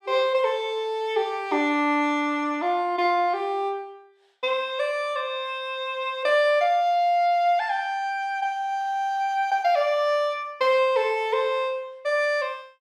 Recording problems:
none

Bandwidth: 15 kHz